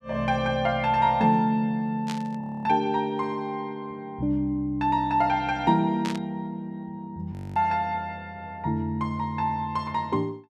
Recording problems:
static burst; at 2 s and at 6 s; peak -5 dB vs average level
frozen audio; at 2.5 s and at 7.5 s

